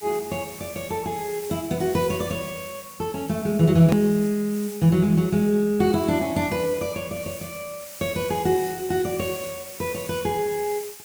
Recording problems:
lossy compression; Opus, log-spectral distance 2 dB
hiss; slope +1 dB per octave, SNR 15 dB
edit click; at 4 s

